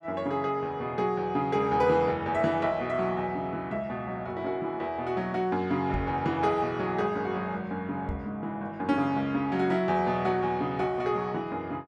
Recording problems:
knock on the microphone; at 6 s and at 8 s; peak -1 dB vs average level

